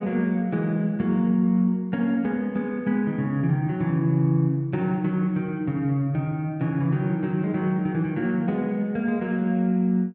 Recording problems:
none

